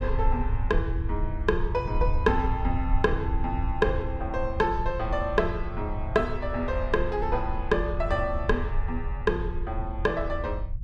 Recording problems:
low-frequency rumble; below 72 Hz, SNR 3 dB

